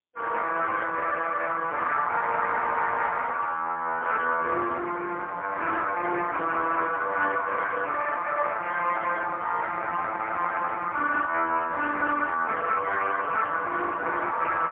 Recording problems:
phone line; 240 Hz to 3.3 kHz, AMR-NB, then MP3

